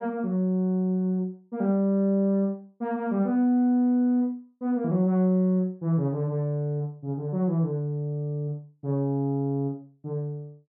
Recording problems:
none

